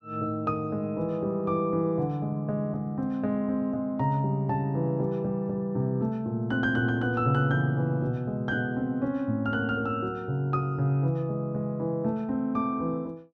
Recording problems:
none

